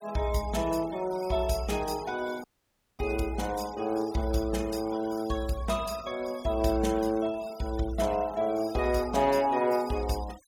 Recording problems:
denoising artefacts; signal-to-artefact ratio 19 dB
dropout; at 2.5 s for 0.5 s

